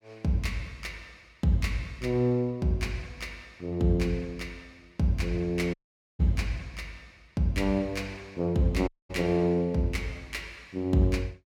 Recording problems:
dropout; at 5.5 s and at 9 s

